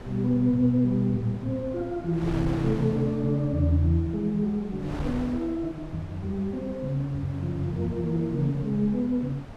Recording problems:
wind on the microphone; below 510 Hz, SNR 13 dB

